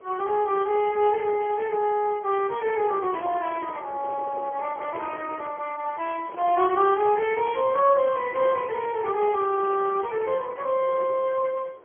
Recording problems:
phone line; 320 Hz to 2.9 kHz, Speex
wind noise; below 730 Hz, SNR 19 dB
crackling; at 1 s and from 7.5 to 10 s; loose cable, SNR 27 dB

